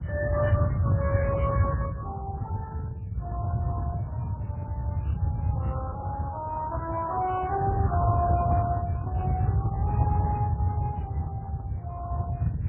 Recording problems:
lossy compression; Speex, then MP3, log-spectral distance 3 dB, nothing above 3 kHz
low-frequency rumble; below 130 Hz, SNR -3 dB

